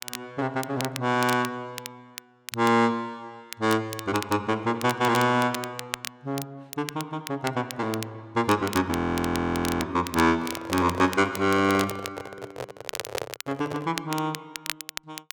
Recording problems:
crackling; vinyl, SNR 11 dB
frozen audio; at 9 s for 1 s
microphone handling noise; from 10 to 14 s; peak -1 dB vs average level

